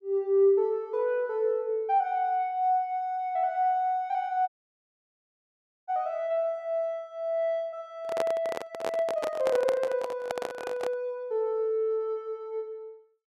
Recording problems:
dropout; at 4.5 s for 1.5 s
microphone handling noise; from 8 to 11 s; peak +1 dB vs average level

